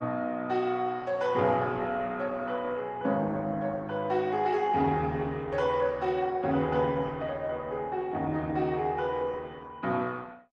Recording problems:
codec artefacts; Opus, log-spectral distance 2 dB

